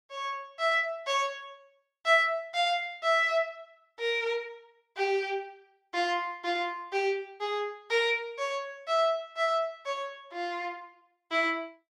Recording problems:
none

